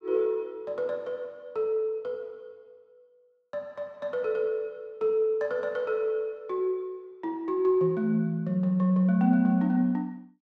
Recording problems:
none

